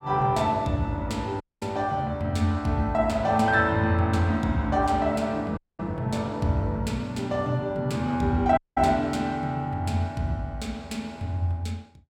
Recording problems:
audio cutting out; at 1.5 s, at 5.5 s and at 8.5 s

